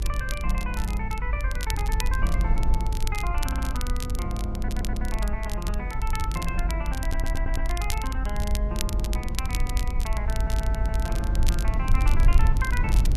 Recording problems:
hum; 50 Hz, harmonics up to 500 Hz, SNR 22 dB
rumble; below 58 Hz, SNR -6 dB
wind noise; below 130 Hz, SNR 12 dB
crackle; vinyl, SNR 5 dB
stutter; 4 times, first at 3.5 s

